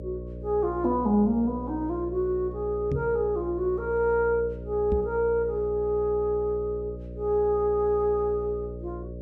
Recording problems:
hum; 60 Hz, harmonics up to 600 Hz, SNR 12 dB
knock on the microphone; at 3 s and at 5 s; peak +1 dB vs average level

